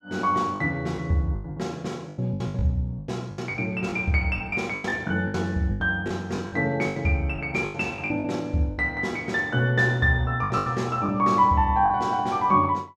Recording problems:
packet loss; 12% of the sound replaced, filled with the last packet

